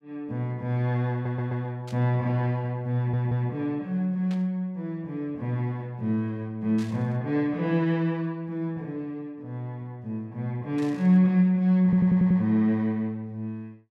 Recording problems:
audio stuttering; at 1 s, at 3 s and at 12 s
static burst; 4 times, first at 2 s; peak -14 dB vs average level

